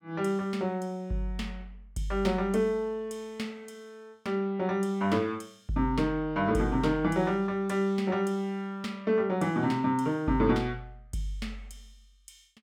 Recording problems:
none

